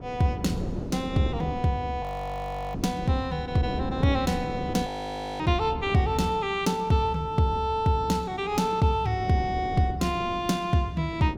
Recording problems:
wind on the microphone; below 350 Hz, SNR 11 dB
frozen audio; at 2 s for 0.5 s and at 5 s for 0.5 s

